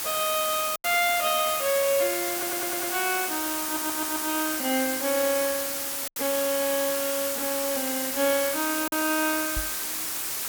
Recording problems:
background hiss; slope 0 dB per octave, SNR 1 dB
lost packets; 2% of the sound replaced, filled with silence
stutter; at 2.5 s and at 3.5 s
knock on the microphone; at 9.5 s; peak -4 dB vs average level

